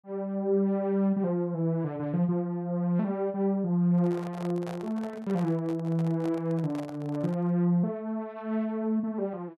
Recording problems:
handling noise; from 4 to 7.5 s; peak -8 dB vs average level

